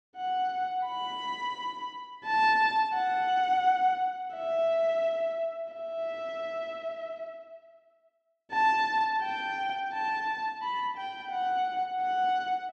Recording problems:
none

